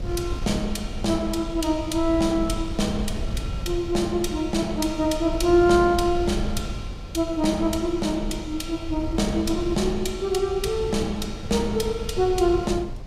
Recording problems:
wind on the microphone; below 110 Hz, SNR 9 dB

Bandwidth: 15.5 kHz